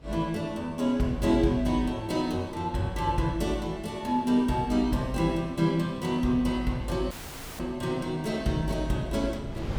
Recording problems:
wind noise; below 210 Hz, SNR 21 dB
dropout; at 7 s

